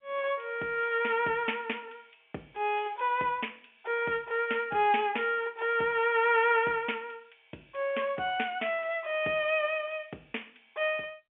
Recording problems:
phone line; 300 Hz to 3.3 kHz, G.711

